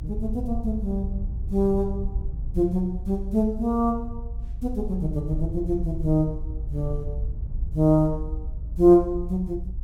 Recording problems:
rumble; below 66 Hz, SNR 8 dB

